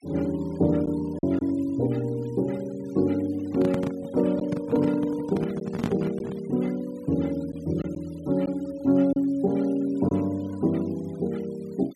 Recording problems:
noise reduction artefacts; signal-to-artefact ratio 24 dB
lost packets; 1.7% of the sound replaced, filled with silence
handling noise; from 3.5 to 6.5 s; peak +2 dB vs average level

